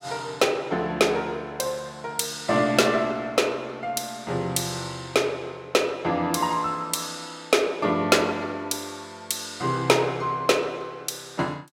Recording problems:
none

